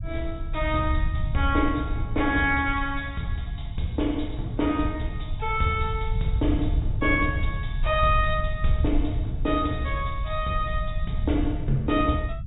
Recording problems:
treble missing; nothing above 4 kHz
low-frequency rumble; below 82 Hz, SNR 4 dB

